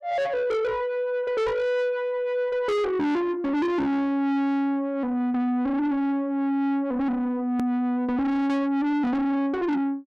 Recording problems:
distortion; soft clipping, signal-to-distortion ratio 7 dB
edit click; at 7.5 s

